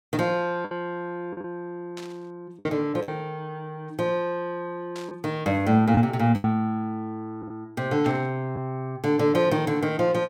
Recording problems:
lost packets; 4% of the sound replaced, filled with the last packet
static burst; at 2 s, at 5 s and at 8 s; peak -10 dB vs average level

